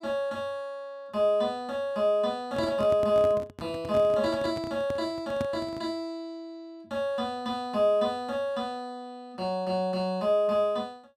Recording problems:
handling noise; from 2.5 to 6 s; peak -2 dB vs average level

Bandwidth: 15 kHz